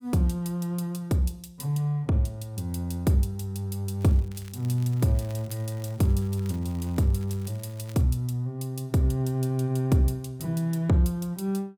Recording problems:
crackling; from 4 to 8 s; loose cable, SNR 26 dB

